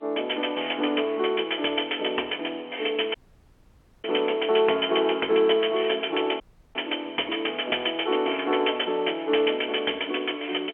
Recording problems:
telephone audio; 300 Hz to 3.2 kHz, G.711
audio cutting out; at 3 s for 1 s and at 6.5 s

